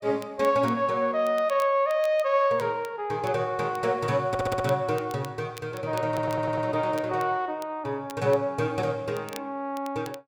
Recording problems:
crackle; vinyl, SNR 22 dB
audio stuttering; at 4.5 s and at 6 s

